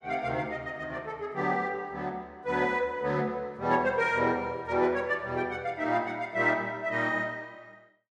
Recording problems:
none

